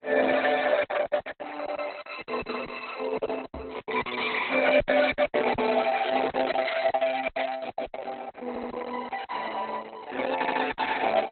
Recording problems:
lossy codec; Opus, log-spectral distance 6 dB, nothing above 4.1 kHz
packet loss; 14% of the sound replaced, filled with silence
knock on the microphone; at 3.5 s; peak -9 dB vs average level
audio stuttering; at 8.5 s and at 10 s

